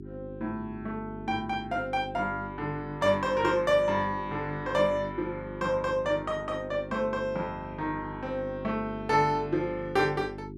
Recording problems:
hum; 50 Hz, harmonics up to 400 Hz, SNR 12 dB

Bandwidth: 13.5 kHz